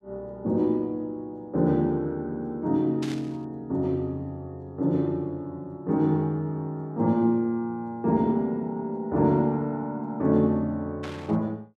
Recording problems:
burst of static; at 3 s and at 11 s; peak -8 dB vs average level

